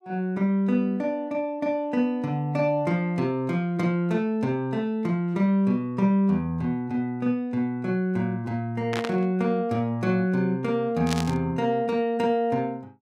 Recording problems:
burst of static; at 9 s and at 11 s; peak -1 dB vs average level

